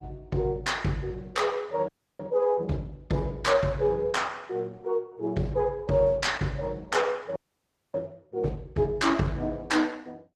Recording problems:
lossy compression; Opus, log-spectral distance 2 dB, nothing above 14.6 kHz
frozen audio; at 2 s and at 7.5 s for 0.5 s

